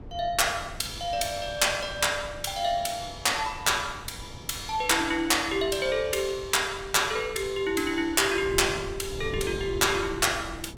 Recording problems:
wind noise; below 270 Hz, SNR 16 dB

